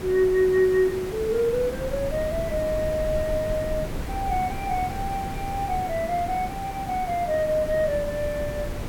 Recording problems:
background hiss; slope -6 dB per octave, SNR 10 dB
low-frequency rumble; below 100 Hz, SNR 13 dB

